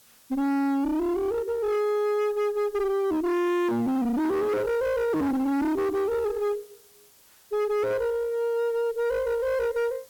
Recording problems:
distortion; hard clipping, uneven, signal-to-distortion ratio 6 dB
background hiss; slope 0 dB per octave, SNR 27 dB

